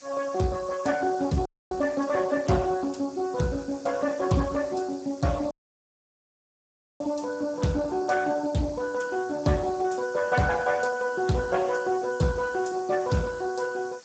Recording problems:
lossy compression; Speex, log-spectral distance 6 dB, nothing above 7.8 kHz
hiss; SNR 23 dB
audio cutting out; at 1.5 s and at 5.5 s for 1.5 s

